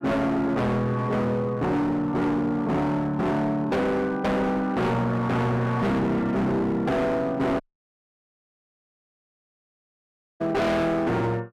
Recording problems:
distortion; hard clipping, signal-to-distortion ratio 6 dB
audio cutting out; at 7.5 s for 3 s

